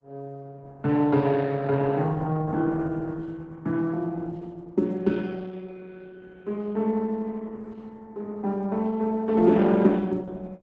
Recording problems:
lossy codec; Opus, log-spectral distance 3 dB

